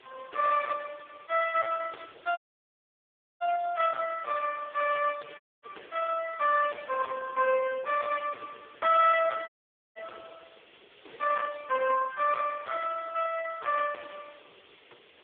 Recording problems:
telephone audio; 450 Hz to 2.9 kHz, AMR-NB
distorted audio; hard clipping, signal-to-distortion ratio 12 dB
background hiss; SNR 27 dB
audio cutting out; at 2.5 s for 1 s, at 5.5 s and at 9.5 s

